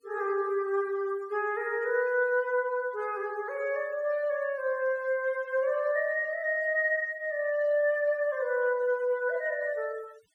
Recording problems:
denoising artefacts; signal-to-artefact ratio 27 dB

